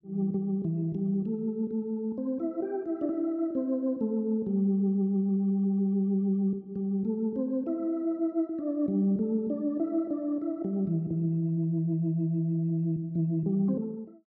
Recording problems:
none

